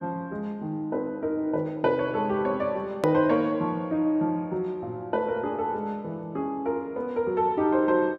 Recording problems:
edit click; at 3 s

